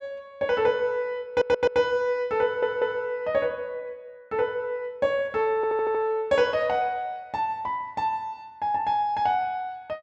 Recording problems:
stutter; at 1.5 s, at 2.5 s and at 5.5 s

